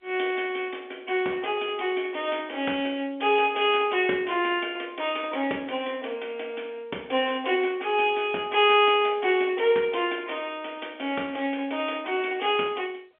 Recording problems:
phone line; 240 Hz to 3.5 kHz, G.711

